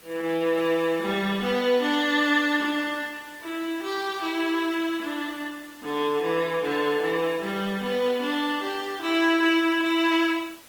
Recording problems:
codec artefacts; Opus, log-spectral distance 4 dB
hiss; slope -1 dB per octave, SNR 22 dB

